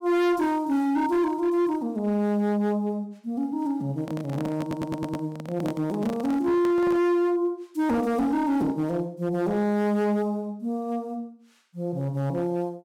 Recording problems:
distortion; hard clipping, signal-to-distortion ratio 10 dB
microphone handling noise; from 4 to 7 s; peak -4 dB vs average level
audio stuttering; at 4.5 s

